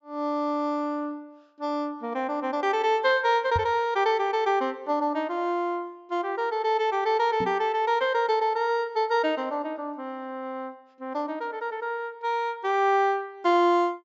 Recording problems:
low-pass filter; nothing above 7.5 kHz
microphone bump; at 3.5 s and at 7.5 s; peak -1 dB vs average level

